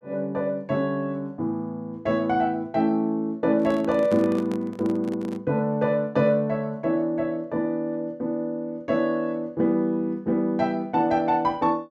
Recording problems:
handling noise; from 3.5 to 5.5 s; peak -5 dB vs average level

